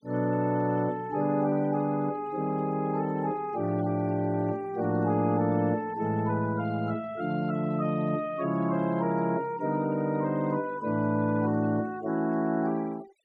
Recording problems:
denoising artefacts; signal-to-artefact ratio 24 dB

